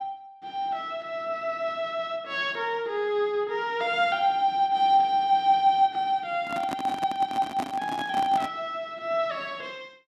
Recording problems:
microphone handling noise; from 6.5 to 8.5 s; peak -3 dB vs average level

